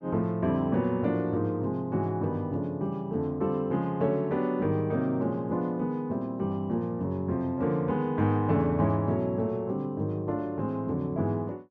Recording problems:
none

